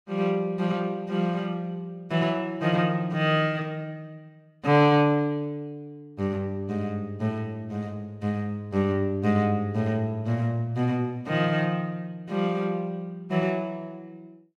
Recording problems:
none

